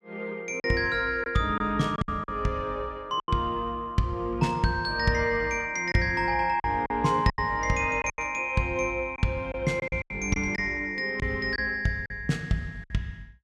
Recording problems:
packet loss; 7% of the sound replaced, filled with silence

